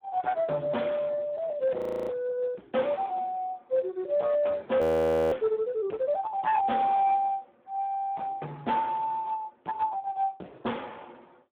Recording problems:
telephone audio; 280 Hz to 2.9 kHz, Speex
distortion; hard clipping, signal-to-distortion ratio 10 dB
audio freezing; at 2 s and at 5 s for 0.5 s

